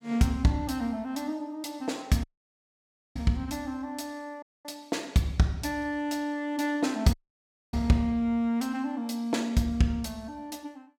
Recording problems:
dropout; at 2 s for 1 s, at 4.5 s and at 7 s for 0.5 s

